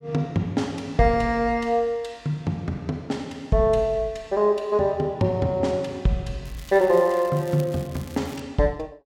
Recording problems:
crackling; from 6.5 to 8.5 s; loose cable, SNR 22 dB

